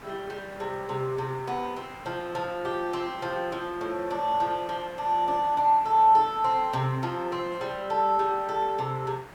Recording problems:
background hiss; SNR 19 dB

